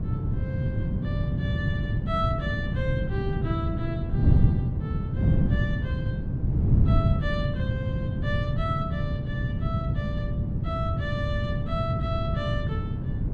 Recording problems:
hum; 50 Hz, harmonics up to 1.7 kHz, SNR 15 dB
wind noise; below 160 Hz, SNR -8 dB

